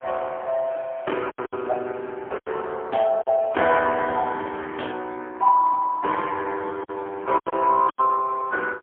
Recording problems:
telephone audio; 320 Hz to 3.3 kHz, AMR-NB, then MP3
packet loss; 5% of the sound replaced, filled with silence

